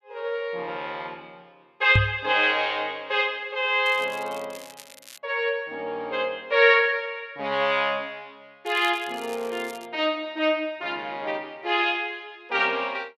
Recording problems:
microphone thump; at 2 s; peak +6 dB vs average level
crackling; from 4 to 5 s and from 8.5 to 10 s; loose cable, SNR 21 dB

